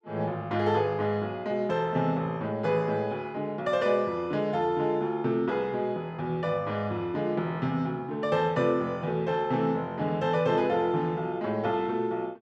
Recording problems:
none

